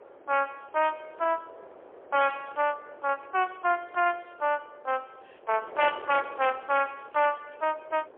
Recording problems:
telephone audio; 340 Hz to 3.2 kHz, AMR-NB, then MP3
distorted audio; hard clipping, signal-to-distortion ratio 12 dB
wind on the microphone; below 1.1 kHz, SNR 18 dB

